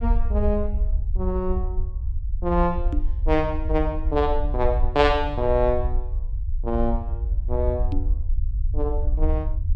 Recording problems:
low-frequency rumble; below 62 Hz, SNR 2 dB
microphone bump; at 3 s and at 8 s; peak +2 dB vs average level

